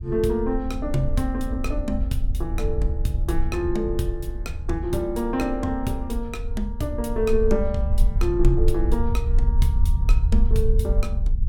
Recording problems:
rumble; below 60 Hz, SNR 0 dB

